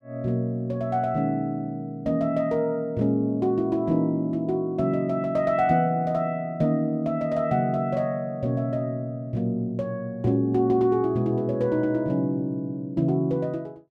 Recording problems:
none

